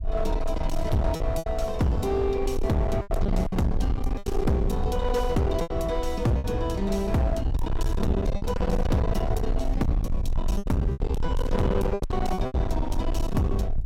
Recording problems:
distorted audio; hard clipping, signal-to-distortion ratio 7 dB
rumble; below 70 Hz, strongest tone 20 Hz, SNR 4 dB
lost packets; 8% of the sound replaced, filled with repeated pitch periods

